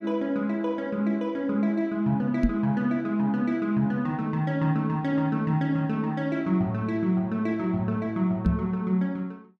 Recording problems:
knock on the microphone; at 2.5 s and at 8.5 s; peak +6 dB vs average level

